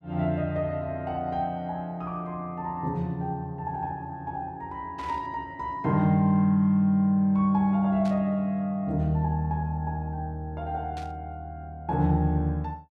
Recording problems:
static burst; at 5 s, at 8 s and at 11 s; peak -14 dB vs average level

